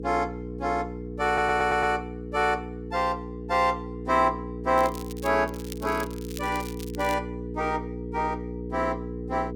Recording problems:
electrical hum; 60 Hz, harmonics up to 480 Hz, SNR 8 dB
audio stuttering; at 1.5 s
crackle; at 5 s and from 5.5 to 7 s; loose cable, SNR 16 dB

